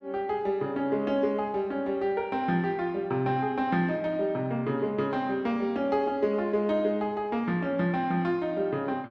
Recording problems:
none

